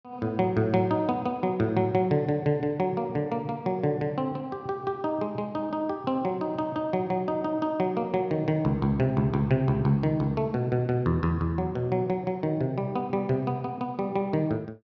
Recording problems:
low-pass filter; nothing above 8 kHz

